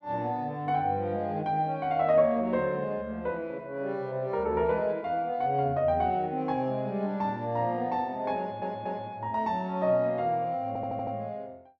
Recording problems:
audio stuttering; at 8.5 s and at 11 s

